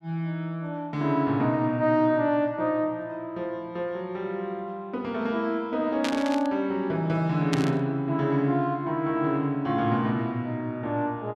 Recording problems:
static burst; at 6 s and at 7.5 s; peak 0 dB vs average level

